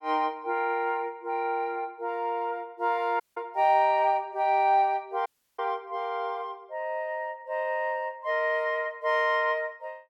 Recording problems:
audio cutting out; at 3 s and at 5.5 s

